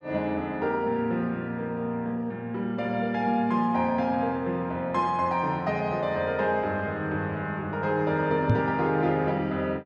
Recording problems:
knock on the microphone; at 8.5 s; peak +7 dB vs average level

